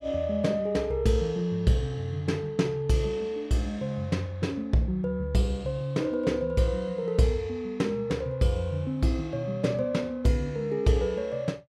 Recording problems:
none

